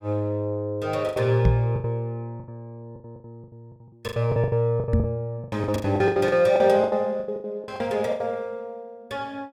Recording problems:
packet loss; 18% of the sound replaced, filled with the last packet
knock on the microphone; at 1.5 s and at 5 s; peak +6 dB vs average level

